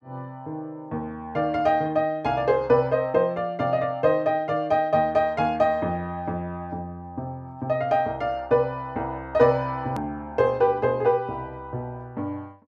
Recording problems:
edit click; at 10 s

